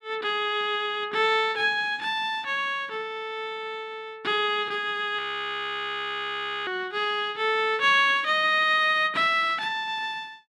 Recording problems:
audio freezing; at 5 s for 1.5 s

